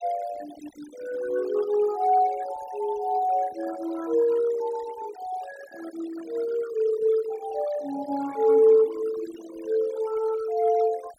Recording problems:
noise reduction artefacts; signal-to-artefact ratio 19 dB

